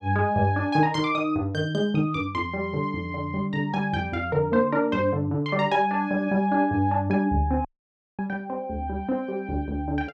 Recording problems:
dropout; at 7.5 s for 0.5 s

